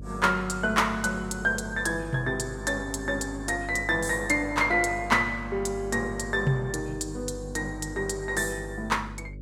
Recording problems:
electrical hum; 50 Hz, harmonics up to 550 Hz, SNR 13 dB

